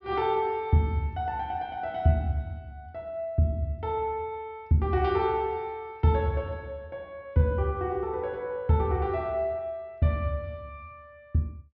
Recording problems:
low-pass filter; nothing above 5.9 kHz

